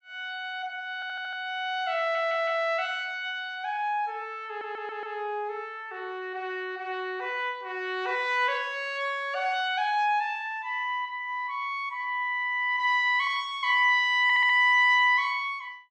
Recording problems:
stutter; 4 times, first at 1 s

